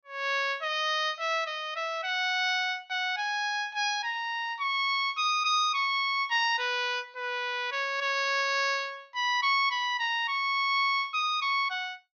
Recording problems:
treble missing; nothing above 6.5 kHz

